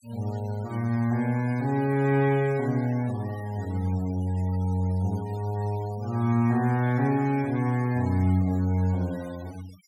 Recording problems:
denoising artefacts; signal-to-artefact ratio 22 dB

